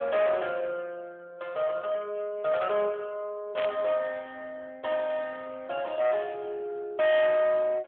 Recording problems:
telephone audio; 390 Hz to 2.6 kHz, AMR-NB
distorted audio; hard clipping, uneven, signal-to-distortion ratio 6 dB
burst of static; at 3.5 s; peak -4 dB vs average level

